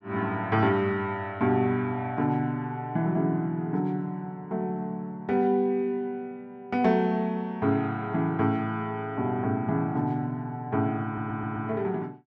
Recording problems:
stutter; at 11 s

